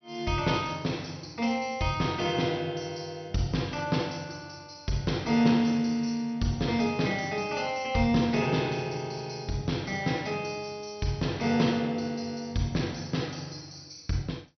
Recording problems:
treble missing; nothing above 6 kHz

